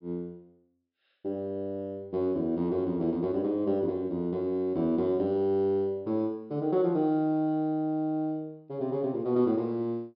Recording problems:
treble missing; nothing above 5.5 kHz

